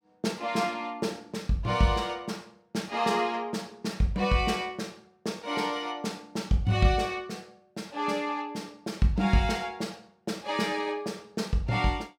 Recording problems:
none

